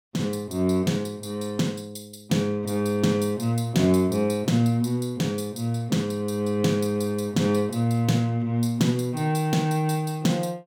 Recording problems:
none

